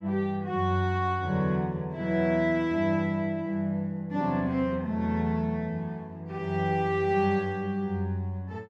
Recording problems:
none

